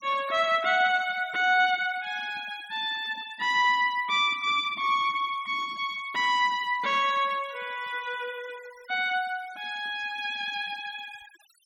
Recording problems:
denoising artefacts; signal-to-artefact ratio 23 dB

